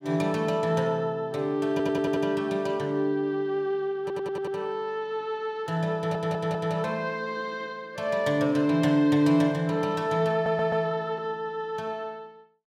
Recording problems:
audio stuttering; 4 times, first at 1.5 s

